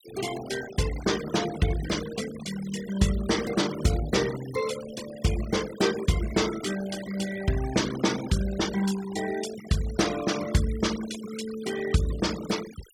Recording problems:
denoising artefacts; signal-to-artefact ratio 12 dB

